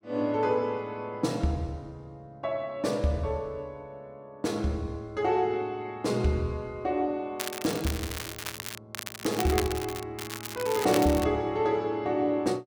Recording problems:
crackle; from 7.5 to 9 s, from 9 to 10 s and from 10 to 11 s; loose cable, SNR 7 dB

